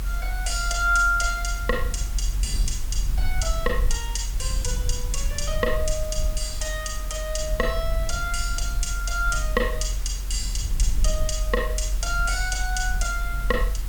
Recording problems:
hiss; slope -2 dB per octave, SNR 13 dB
low-frequency rumble; below 46 Hz, strongest tone 44 Hz, SNR 2 dB

